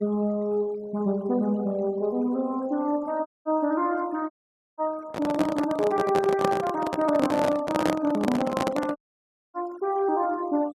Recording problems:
denoising artefacts; signal-to-artefact ratio 23 dB
dropout; at 3.5 s, at 4.5 s and at 9 s for 0.5 s
microphone handling noise; from 5 to 9 s; peak +4 dB vs average level

